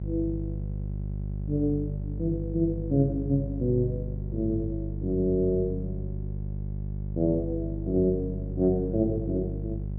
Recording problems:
hum; 50 Hz, harmonics up to 400 Hz, SNR 5 dB

